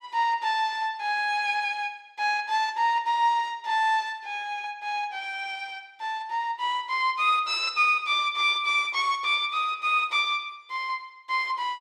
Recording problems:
none

